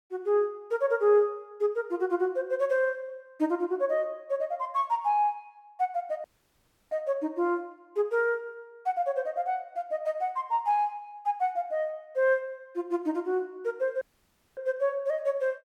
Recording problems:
audio cutting out; at 6 s for 0.5 s and at 14 s for 0.5 s

